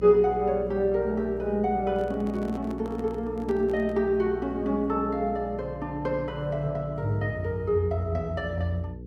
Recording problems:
hum; 60 Hz, harmonics up to 480 Hz, SNR 13 dB
microphone handling noise; from 2 to 4 s; peak -9 dB vs average level

